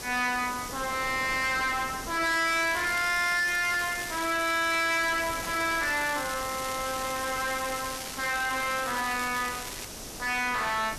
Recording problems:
distortion; soft clipping, signal-to-distortion ratio 8 dB
background hiss; SNR 12 dB
wind on the microphone; below 1.1 kHz, SNR 16 dB
crackling; from 2 to 10 s; loose cable, SNR 11 dB

